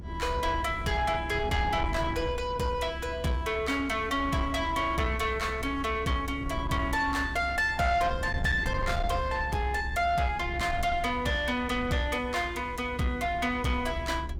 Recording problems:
distorted audio; soft clipping, signal-to-distortion ratio 11 dB
hum; 50 Hz, harmonics up to 400 Hz, SNR 21 dB
rumble; below 120 Hz, SNR 9 dB

